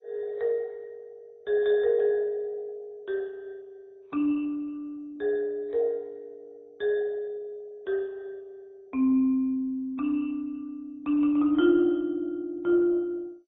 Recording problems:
codec artefacts; AAC, then MP2, log-spectral distance 2 dB, nothing above 3.1 kHz

